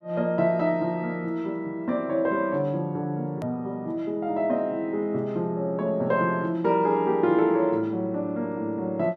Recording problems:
click at an edit; at 3.5 s

